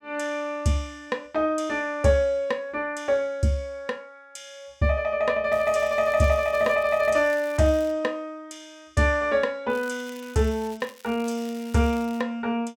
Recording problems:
crackle; from 5.5 to 8 s and from 9.5 to 12 s; loose cable, SNR 23 dB

